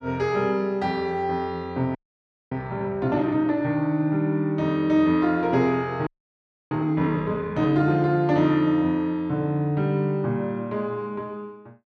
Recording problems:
audio freezing; at 2 s for 0.5 s and at 6 s for 0.5 s

